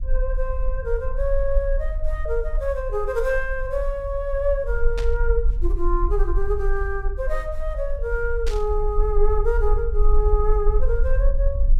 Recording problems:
low-frequency rumble; below 42 Hz, SNR 0 dB
static burst; at 5 s and at 8.5 s; peak -5 dB vs average level

